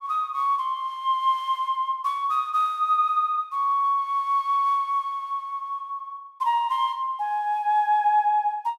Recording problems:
none

